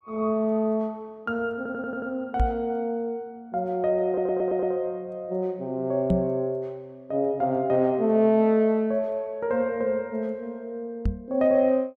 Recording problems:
stutter; at 1.5 s and at 4 s
knock on the microphone; at 2.5 s, at 6 s and at 11 s; peak +5 dB vs average level

